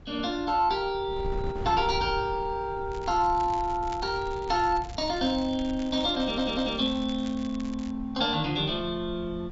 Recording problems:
low-pass filter; nothing above 8 kHz
wind noise; below 120 Hz, SNR 15 dB
crackling; from 3 to 8 s; loose cable, SNR 21 dB
stutter; at 6 s

